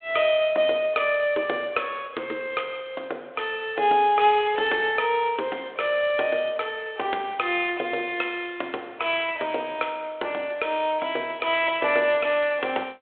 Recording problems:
phone line; 340 Hz to 3.6 kHz, G.726

